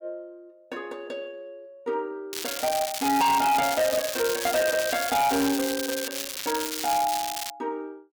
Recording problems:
distorted audio; hard clipping, signal-to-distortion ratio 7 dB
crackle; from 2.5 to 7.5 s; loose cable, SNR 4 dB

